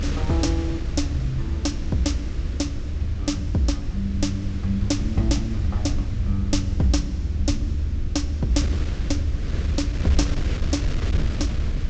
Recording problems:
low-pass filter; nothing above 8 kHz
hum; 50 Hz, harmonics up to 350 Hz, SNR 14 dB
low-frequency rumble; below 78 Hz, SNR 1 dB
wind on the microphone; below 160 Hz, SNR 6 dB

